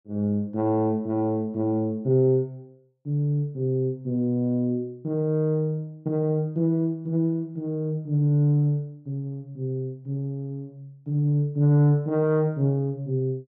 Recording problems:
none

